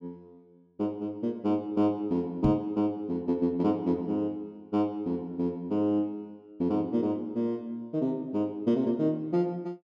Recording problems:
microphone thump; at 2.5 s; peak +5 dB vs average level

